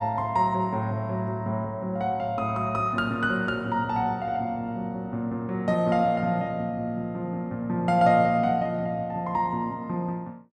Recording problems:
none

